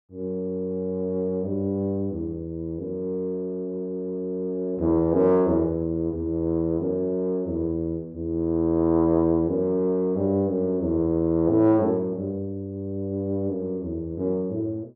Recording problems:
none

